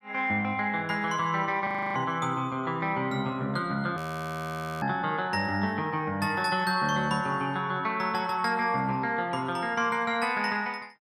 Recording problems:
audio freezing; at 1.5 s and at 4 s for 1 s

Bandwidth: 15 kHz